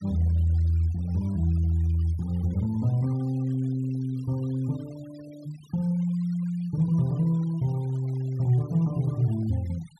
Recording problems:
denoising artefacts; signal-to-artefact ratio 26 dB

